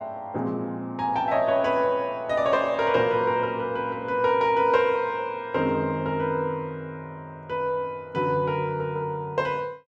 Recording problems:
none

